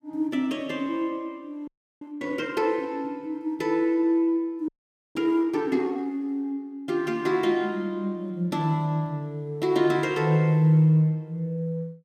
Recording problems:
audio freezing; at 1.5 s and at 4.5 s

